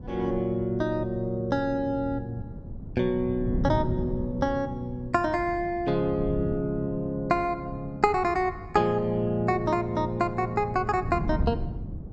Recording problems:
wind on the microphone; below 180 Hz, SNR 9 dB

